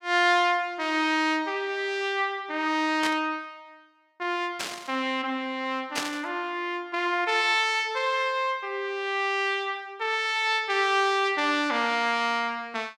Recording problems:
burst of static; at 3 s, at 4.5 s and at 6 s; peak +1 dB vs average level

